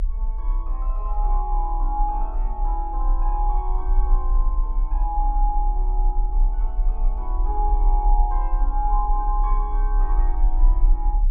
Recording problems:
low-frequency rumble; below 36 Hz, strongest tone 32 Hz, SNR -6 dB

